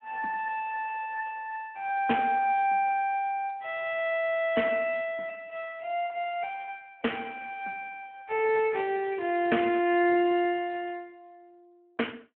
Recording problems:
phone line; 280 Hz to 3 kHz, Speex

